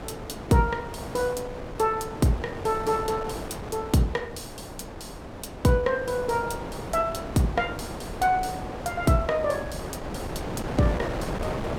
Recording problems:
wind on the microphone; below 830 Hz, SNR 9 dB

